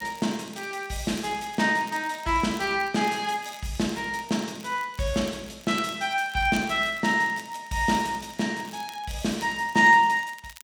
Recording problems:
crackling; vinyl, SNR 23 dB

